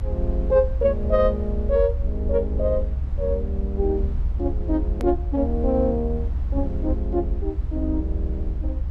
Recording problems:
low-frequency rumble; below 68 Hz, SNR 2 dB
click at an edit; at 5 s

